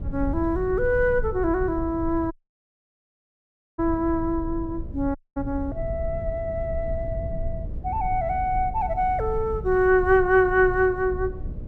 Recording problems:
hum; 60 Hz, harmonics up to 600 Hz, SNR 23 dB
rumble; below 90 Hz, SNR 10 dB
dropout; at 2.5 s for 1.5 s and at 5 s

